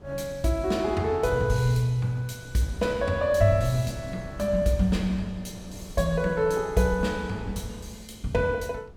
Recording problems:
wind on the microphone; below 310 Hz, SNR 19 dB

